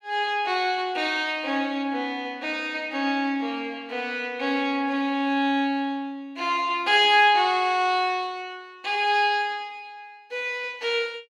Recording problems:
none

